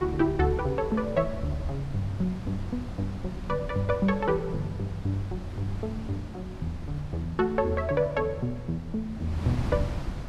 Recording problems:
wind noise; below 200 Hz, SNR 8 dB

